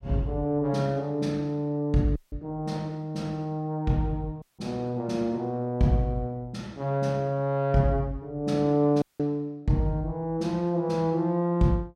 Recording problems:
audio cutting out; at 2 s, at 4.5 s and at 9 s

